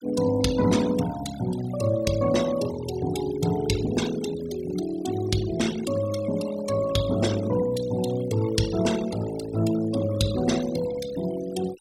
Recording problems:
noise reduction artefacts; signal-to-artefact ratio 12 dB

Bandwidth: 16 kHz